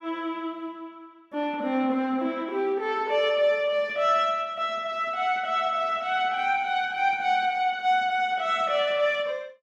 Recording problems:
none

